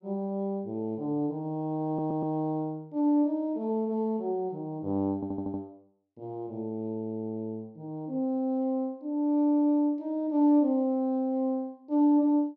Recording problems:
stutter; at 2 s and at 5 s

